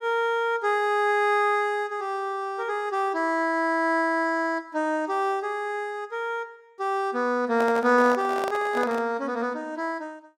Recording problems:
handling noise; from 7.5 to 9 s; peak -3 dB vs average level

